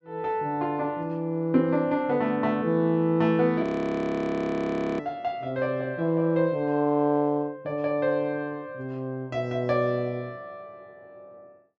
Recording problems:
treble missing; nothing above 8 kHz
frozen audio; at 3.5 s for 1.5 s

